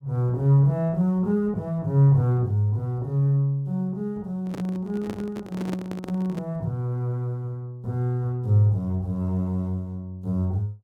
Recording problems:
handling noise; from 4.5 to 6.5 s; peak -4 dB vs average level

